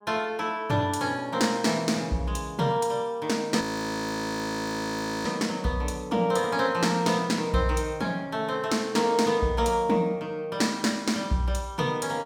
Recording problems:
audio freezing; at 3.5 s for 1.5 s

